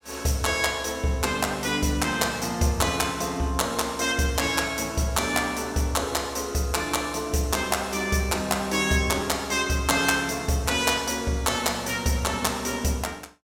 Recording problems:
none

